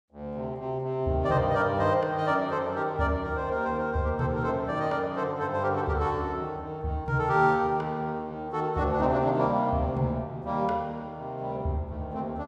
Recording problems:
none

